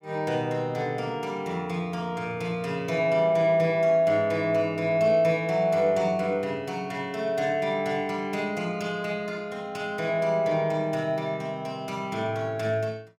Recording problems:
none

